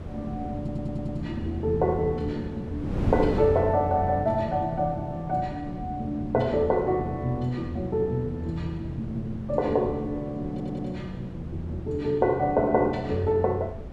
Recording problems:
wind on the microphone; below 280 Hz, SNR 11 dB
stutter; at 0.5 s and at 11 s

